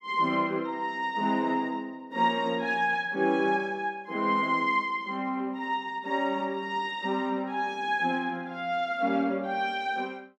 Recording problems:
none

